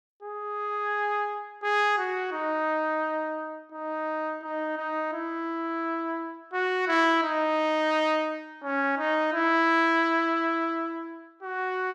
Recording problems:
none

